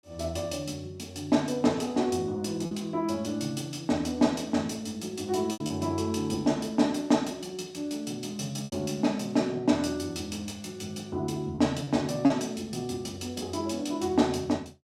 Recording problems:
lost packets; 2% of the sound replaced, filled with repeated pitch periods

